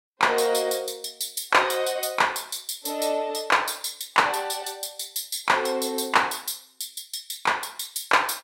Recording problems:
none

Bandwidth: 16 kHz